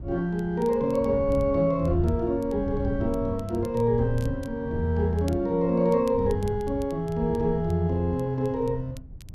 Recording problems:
wind on the microphone; below 120 Hz, SNR 11 dB
crackle; vinyl, SNR 29 dB

